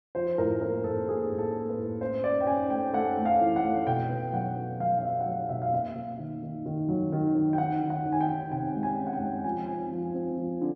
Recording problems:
none

